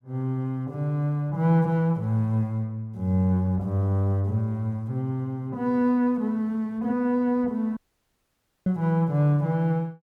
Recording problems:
dropout; at 8 s for 1 s

